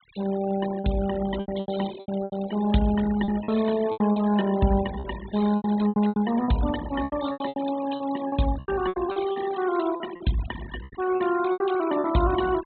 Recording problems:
treble missing; nothing above 4 kHz
denoising artefacts; signal-to-artefact ratio 15 dB
packet loss; 14% of the sound replaced, filled with repeated pitch periods

